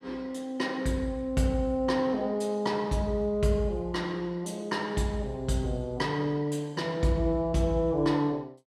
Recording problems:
none

